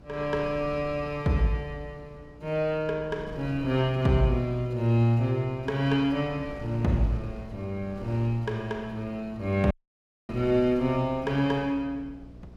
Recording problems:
electrical hum; 60 Hz, harmonics up to 660 Hz, SNR 23 dB
wind on the microphone; below 280 Hz, SNR 20 dB
audio cutting out; at 9.5 s for 0.5 s

